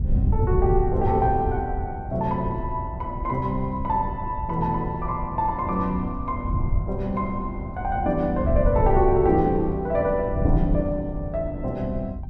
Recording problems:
wind noise; below 110 Hz, SNR 4 dB

